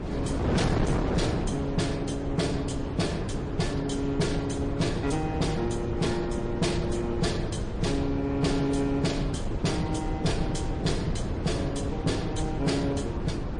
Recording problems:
codec artefacts; MP3, then MP3, log-spectral distance 2 dB, nothing above 9 kHz
distorted audio; hard clipping, signal-to-distortion ratio 10 dB
low-frequency rumble; below 100 Hz, SNR 11 dB
wind noise; below 450 Hz, SNR 3 dB

